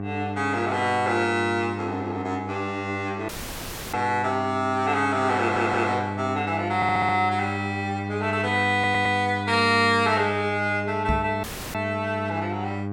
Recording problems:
hum; 50 Hz, harmonics up to 1.5 kHz, SNR 8 dB
audio cutting out; at 3.5 s for 0.5 s and at 11 s
audio stuttering; at 5.5 s, at 7 s and at 8.5 s
knock on the microphone; at 11 s; peak +1 dB vs average level

